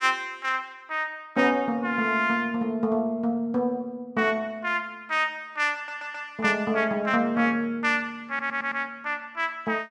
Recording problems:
audio stuttering; at 6 s and at 8.5 s

